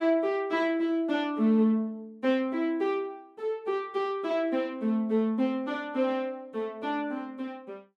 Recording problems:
none

